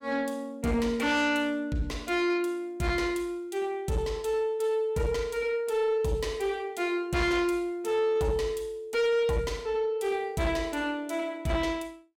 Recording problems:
distorted audio; soft clipping, signal-to-distortion ratio 10 dB

